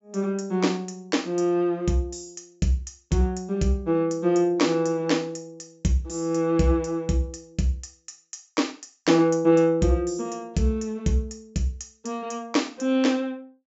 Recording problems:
treble cut off; nothing above 8 kHz

